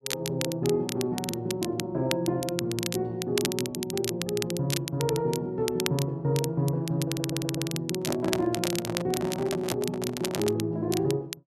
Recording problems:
crackle; vinyl, SNR 6 dB
stutter; at 7 s
handling noise; from 8 to 11 s; peak 0 dB vs average level

